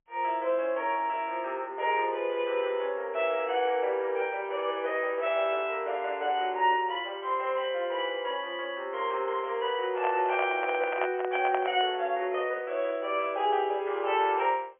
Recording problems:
telephone audio; 370 Hz to 3.2 kHz, G.711
microphone handling noise; from 10 to 12 s; peak +1 dB vs average level

